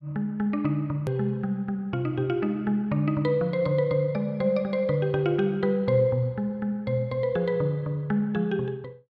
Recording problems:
click at an edit; at 1 s

